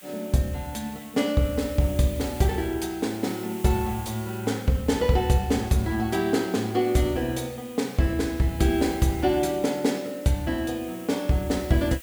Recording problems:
hiss; SNR 18 dB

